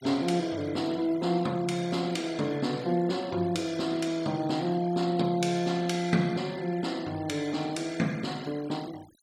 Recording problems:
denoising artefacts; signal-to-artefact ratio 21 dB

